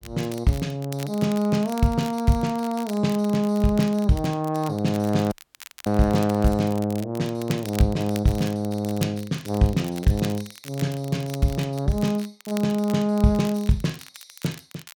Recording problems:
crackle; vinyl, SNR 18 dB
dropout; at 5.5 s for 0.5 s

